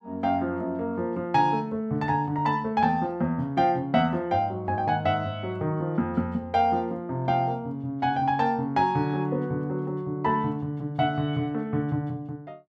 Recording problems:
none

